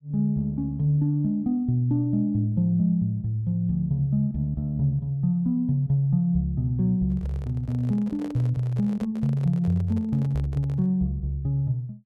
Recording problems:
microphone handling noise; from 7 to 11 s; peak -11 dB vs average level

